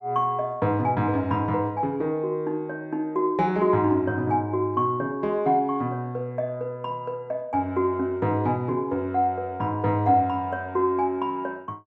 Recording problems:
none

